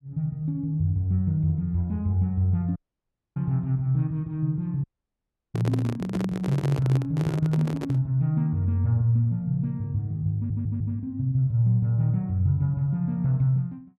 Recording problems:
dropout; at 3 s for 0.5 s and at 5 s for 0.5 s
microphone handling noise; from 5.5 to 8 s; peak -3 dB vs average level
audio stuttering; at 10 s

